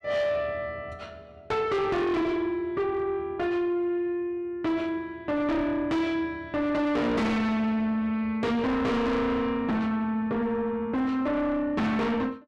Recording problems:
distorted audio; soft clipping, signal-to-distortion ratio 6 dB

